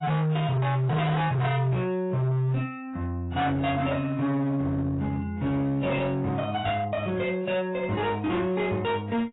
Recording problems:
lossy compression; AAC, log-spectral distance 2 dB, nothing above 3.8 kHz
distorted audio; hard clipping, signal-to-distortion ratio 8 dB

